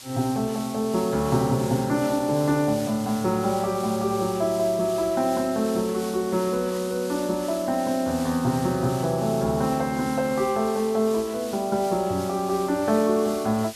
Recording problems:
background hiss; slope +2 dB per octave, SNR 15 dB

